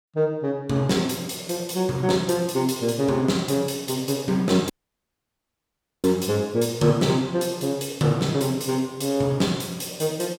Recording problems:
dropout; at 4.5 s for 1.5 s

